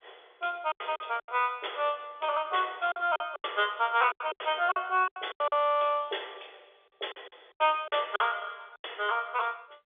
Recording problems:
telephone audio; 340 Hz to 3.6 kHz, G.711
packet loss; 11% of the sound replaced, filled with silence

